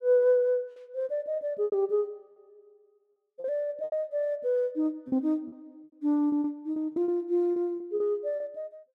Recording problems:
packet loss; 9% of the sound replaced, filled with repeated pitch periods

